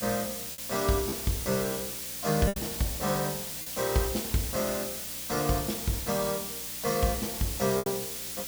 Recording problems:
hum; 60 Hz, harmonics up to 300 Hz, SNR 22 dB
hiss; slope +2 dB per octave, SNR 3 dB
lost packets; 2% of the sound replaced, filled with repeated pitch periods

